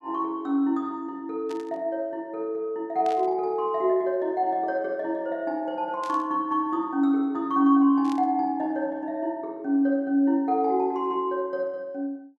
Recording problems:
burst of static; 4 times, first at 1.5 s; peak -13 dB vs average level

